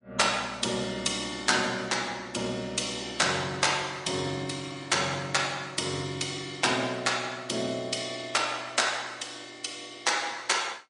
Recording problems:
lossy compression; MP3, log-spectral distance 5 dB, nothing above 10.1 kHz

